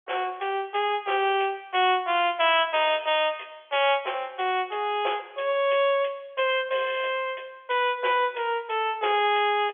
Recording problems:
phone line; 340 Hz to 3.5 kHz, G.711

